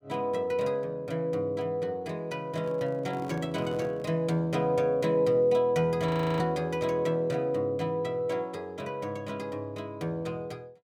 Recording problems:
microphone handling noise; from 2.5 to 4 s; peak -8 dB vs average level
frozen audio; at 6 s

